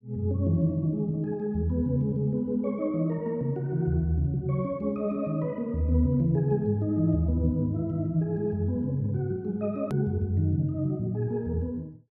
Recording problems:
click at an edit; at 10 s

